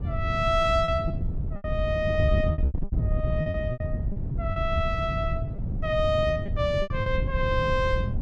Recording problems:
wind noise; below 130 Hz, SNR 2 dB
lost packets; 10% of the sound replaced, filled with repeated pitch periods

